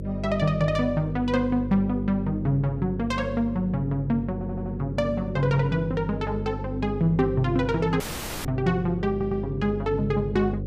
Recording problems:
hum; 50 Hz, harmonics up to 550 Hz, SNR 8 dB
stutter; at 4.5 s and at 9 s
dropout; at 8 s

